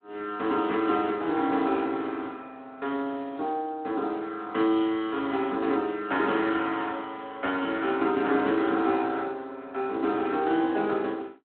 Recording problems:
phone line; 240 Hz to 4 kHz, Speex

